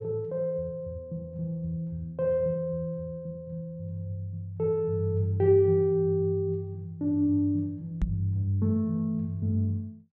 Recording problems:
microphone thump; at 8 s; peak +3 dB vs average level

